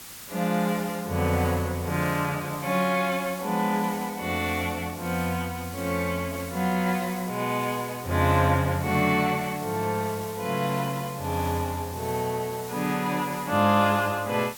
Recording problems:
background hiss; slope 0 dB per octave, SNR 14 dB

